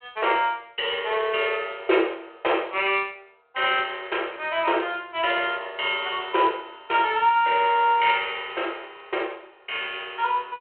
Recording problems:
telephone audio; 300 Hz to 3.3 kHz, G.726

